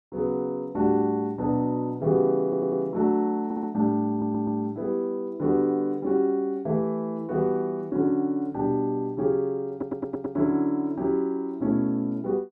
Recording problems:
audio stuttering; 4 times, first at 2.5 s

